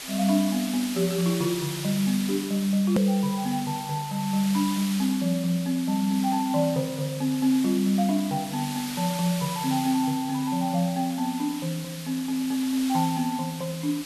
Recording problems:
hiss; slope +1 dB per octave, SNR 10 dB
edit click; at 3 s

